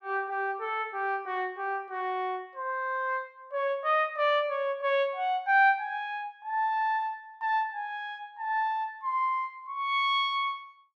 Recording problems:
none

